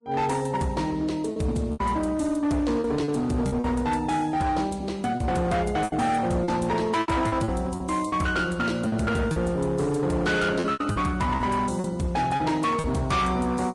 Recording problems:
lossy compression; Vorbis, log-spectral distance 2 dB, nothing above 10.4 kHz
distorted audio; hard clipping, signal-to-distortion ratio 10 dB
packet loss; 8% of the sound replaced, filled with repeated pitch periods

